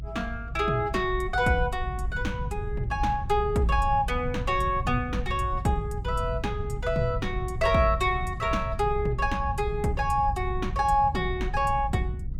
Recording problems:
low-frequency rumble; below 110 Hz, SNR 6 dB

